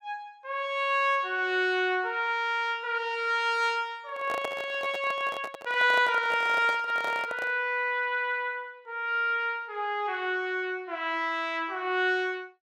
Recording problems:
microphone handling noise; from 4 to 7.5 s; peak -2 dB vs average level

